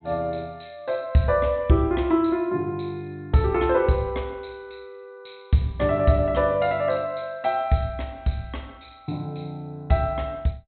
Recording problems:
treble cut off; nothing above 4 kHz

